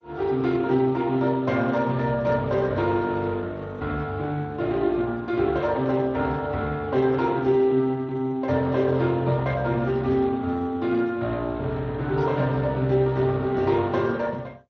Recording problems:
lossy codec; MP2, then Speex, log-spectral distance 3 dB

